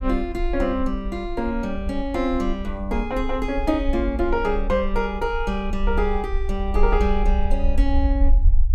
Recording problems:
low-frequency rumble; below 54 Hz, strongest tone 20 Hz, SNR 2 dB

